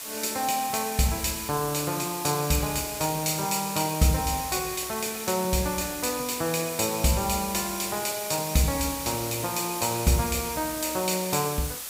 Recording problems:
background hiss; slope +1 dB per octave, SNR 7 dB

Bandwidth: 15.5 kHz